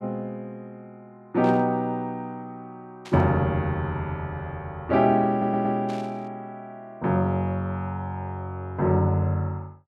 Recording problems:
burst of static; at 1.5 s, at 3 s and at 6 s; peak -12 dB vs average level
audio stuttering; at 5.5 s

